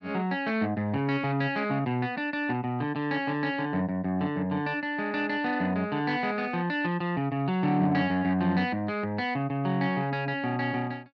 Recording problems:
none

